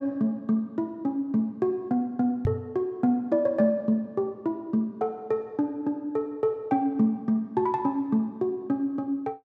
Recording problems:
microphone thump; at 2.5 s; peak +5 dB vs average level

